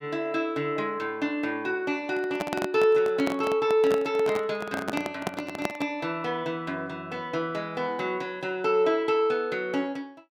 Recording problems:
microphone handling noise; from 2 to 6 s; peak +2 dB vs average level

